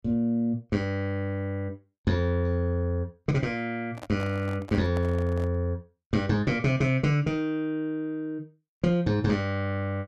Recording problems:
handling noise; from 4 to 5.5 s; peak -8 dB vs average level

